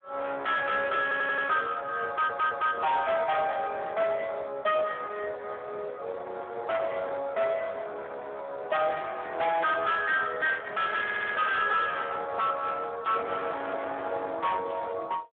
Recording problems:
phone line; 340 Hz to 3.8 kHz, Speex
distorted audio; soft clipping, signal-to-distortion ratio 8 dB
audio stuttering; at 1 s, at 2 s and at 11 s

